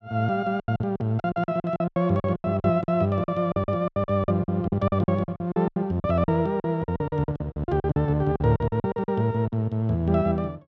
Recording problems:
lost packets; 19% of the sound replaced, filled with silence

